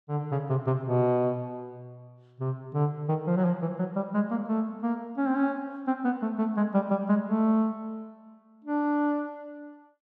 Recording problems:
none

